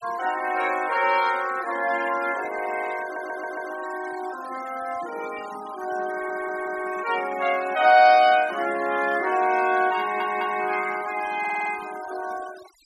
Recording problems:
noise reduction artefacts; signal-to-artefact ratio 16 dB
audio stuttering; 4 times, first at 3 s

